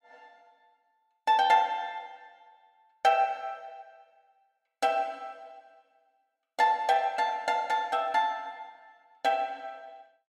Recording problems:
none

